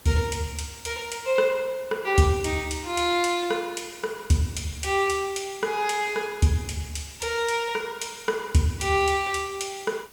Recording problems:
hiss; slope -3 dB per octave, SNR 23 dB

